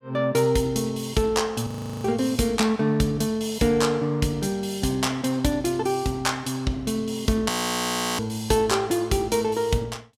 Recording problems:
audio freezing; at 1.5 s and at 7.5 s for 0.5 s

